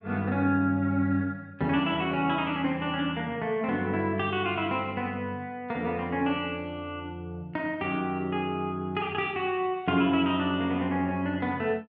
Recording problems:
none

